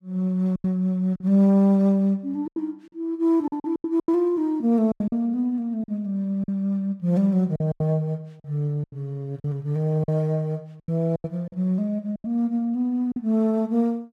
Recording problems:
packet loss; 9% of the sound replaced, filled with silence

